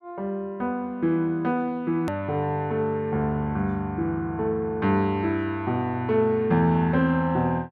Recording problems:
edit click; at 2 s

